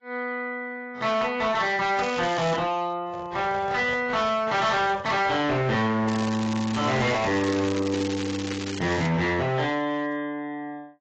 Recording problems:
lossy codec; AAC, log-spectral distance 4 dB, nothing above 7.3 kHz
distorted audio; hard clipping, signal-to-distortion ratio 10 dB
crackling; at 2 s and from 6 to 9 s; loose cable, SNR 11 dB
handling noise; from 3 to 5.5 s; peak -9 dB vs average level

